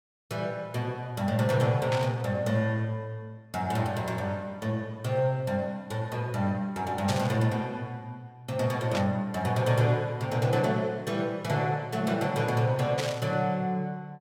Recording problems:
static burst; 4 times, first at 2 s; peak 0 dB vs average level

